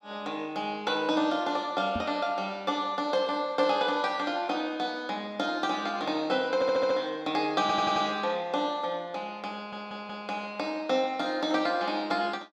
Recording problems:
knock on the microphone; at 2 s; peak -2 dB vs average level
audio stuttering; at 6.5 s, at 7.5 s and at 9.5 s

